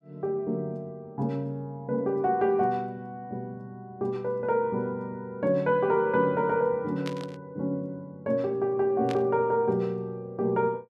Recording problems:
static burst; at 7 s and at 9 s; peak -6 dB vs average level

